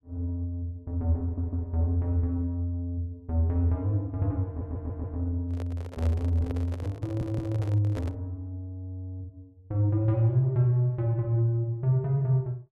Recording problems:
audio stuttering; at 1 s, at 4.5 s and at 7 s
handling noise; from 5.5 to 8 s; peak -7 dB vs average level

